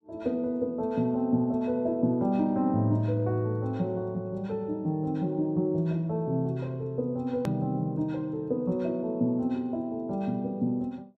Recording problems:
click at an edit; at 7.5 s

